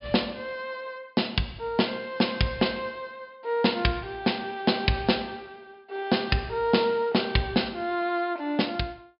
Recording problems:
treble cut off; nothing above 5.5 kHz

